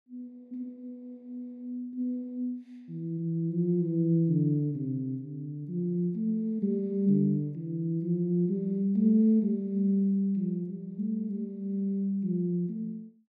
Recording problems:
none

